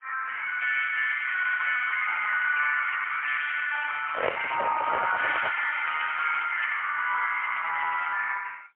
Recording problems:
telephone audio; 430 Hz to 2.9 kHz, AMR-NB, then MP3
crackling; from 3 to 4.5 s, from 5 to 7 s and at 7.5 s; loose cable, SNR 16 dB
handling noise; from 4 to 5.5 s; peak +2 dB vs average level

